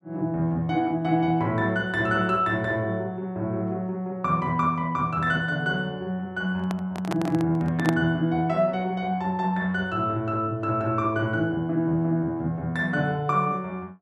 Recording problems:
handling noise; from 6.5 to 8 s; peak +2 dB vs average level

